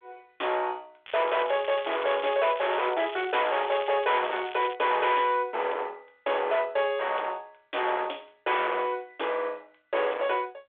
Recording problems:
phone line; 390 Hz to 3.5 kHz, G.726
distorted audio; hard clipping, signal-to-distortion ratio 8 dB
crackle; from 1 to 5 s; loose cable, SNR 14 dB

